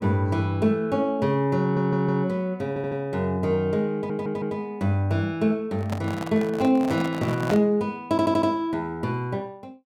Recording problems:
stutter; 4 times, first at 1.5 s
handling noise; from 5.5 to 7.5 s; peak +1 dB vs average level

